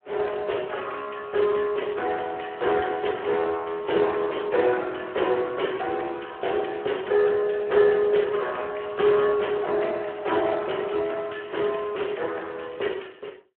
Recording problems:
phone line; 300 Hz to 3.3 kHz, Speex

